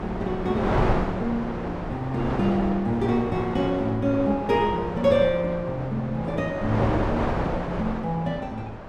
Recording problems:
wind noise; below 860 Hz, SNR 4 dB

